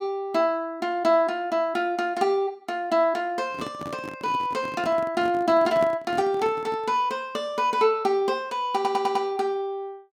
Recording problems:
microphone handling noise; from 3.5 to 7 s; peak -4 dB vs average level
stutter; at 9 s

